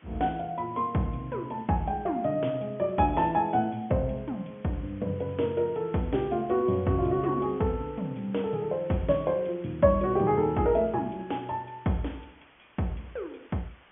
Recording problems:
low-pass filter; nothing above 3.4 kHz
background hiss; SNR 27 dB

